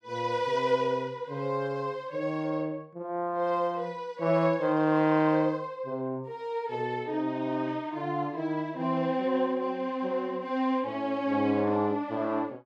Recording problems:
none

